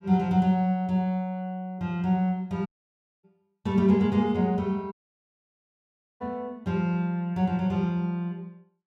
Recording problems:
dropout; at 2.5 s for 0.5 s and at 5 s for 1.5 s

